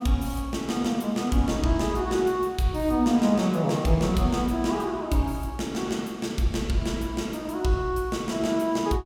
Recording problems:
none

